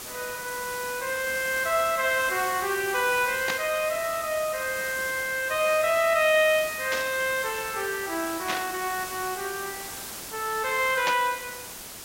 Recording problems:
lossy compression; Opus, then G.722, log-spectral distance 2 dB
hiss; slope -1 dB per octave, SNR 10 dB
static burst; 4 times, first at 3.5 s; peak +1 dB vs average level

